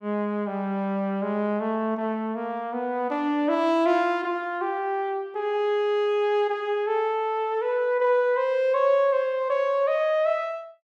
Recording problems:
none

